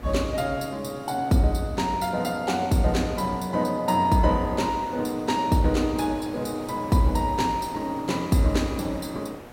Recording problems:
hum; 60 Hz, harmonics up to 1.6 kHz, SNR 23 dB
background hiss; slope -6 dB per octave, SNR 20 dB

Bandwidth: 16 kHz